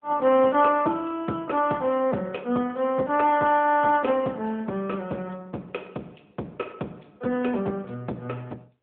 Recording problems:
phone line; 170 Hz to 3.3 kHz, AMR-NB

